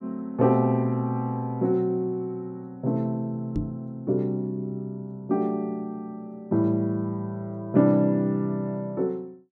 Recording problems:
microphone thump; at 3.5 s; peak +1 dB vs average level

